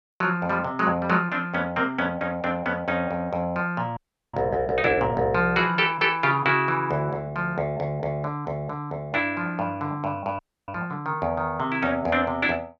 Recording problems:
audio freezing; at 4 s and at 10 s

